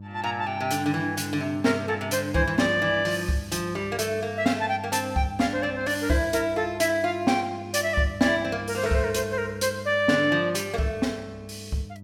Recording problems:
hum; 50 Hz, harmonics up to 600 Hz, SNR 14 dB

